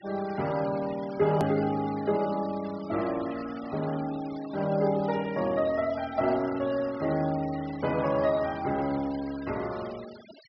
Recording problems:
treble cut off; nothing above 5.5 kHz
denoising artefacts; signal-to-artefact ratio 18 dB
click at an edit; at 1.5 s

